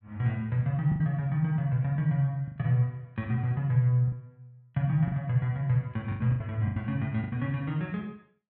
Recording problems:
packet loss; 7% of the sound replaced, filled with the last packet

